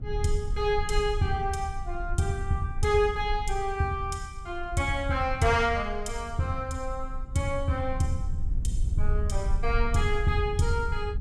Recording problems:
low-frequency rumble; below 56 Hz, strongest tone 22 Hz, SNR 6 dB

